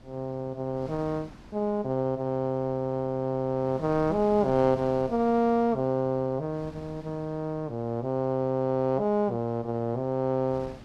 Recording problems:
wind on the microphone; below 520 Hz, SNR 20 dB

